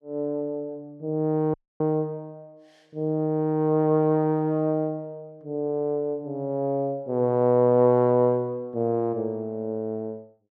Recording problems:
dropout; at 1.5 s

